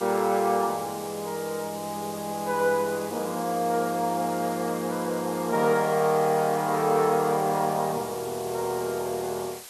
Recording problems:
hiss; slope +1 dB per octave, SNR 14 dB

